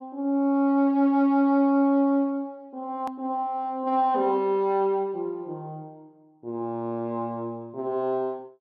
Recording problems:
hard cut with a click; at 3 s

